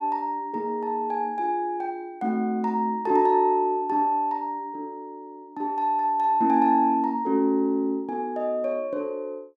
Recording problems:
none

